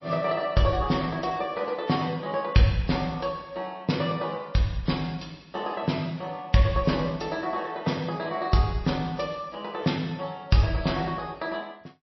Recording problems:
codec artefacts; MP3, log-spectral distance 3 dB, nothing above 5.7 kHz

